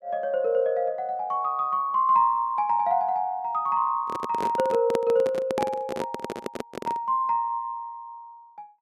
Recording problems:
microphone handling noise; from 4 to 7 s; peak 0 dB vs average level

